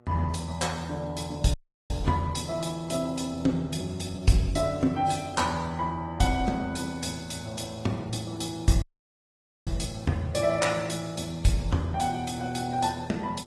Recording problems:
lossy codec; AAC, then Opus, log-spectral distance 5 dB, nothing above 10.4 kHz
electrical hum; 60 Hz, harmonics up to 1.4 kHz, SNR 27 dB
audio cutting out; at 1.5 s and at 9 s for 1 s

